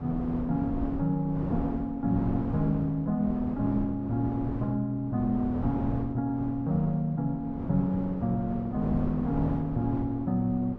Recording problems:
wind on the microphone; below 330 Hz, SNR 8 dB

